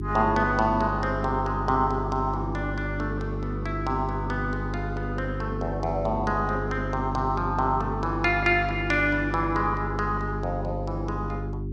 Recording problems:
hum; 50 Hz, harmonics up to 400 Hz, SNR 5 dB

